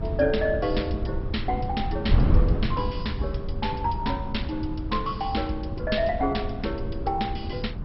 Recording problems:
lossy codec; MP2, log-spectral distance 3 dB, nothing above 5.5 kHz
wind on the microphone; below 130 Hz, SNR 2 dB

